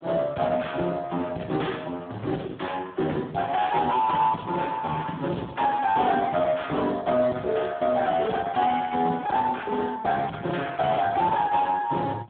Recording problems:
phone line; 110 Hz to 3.6 kHz, Speex
distorted audio; soft clipping, signal-to-distortion ratio 10 dB

